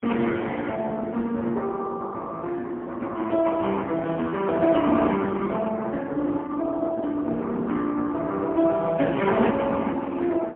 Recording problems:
telephone audio; 170 Hz to 3.3 kHz, AMR-NB, then MP3

